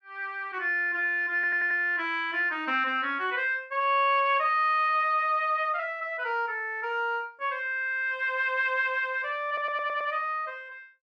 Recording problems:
audio stuttering; at 1.5 s and at 9.5 s

